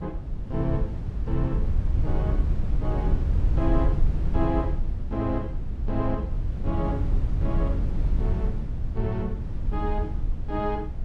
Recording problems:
low-frequency rumble; below 82 Hz, SNR -3 dB

